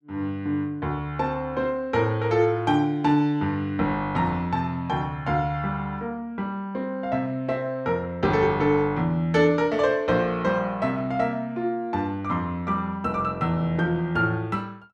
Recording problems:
none

